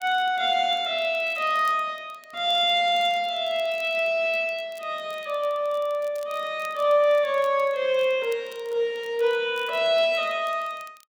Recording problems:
crackling; vinyl, SNR 28 dB

